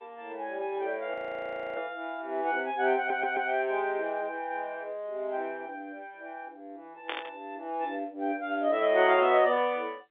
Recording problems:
phone line; 260 Hz to 3.7 kHz, G.711
audio freezing; at 1 s for 0.5 s
audio stuttering; at 3 s
static burst; at 7 s; peak -1 dB vs average level

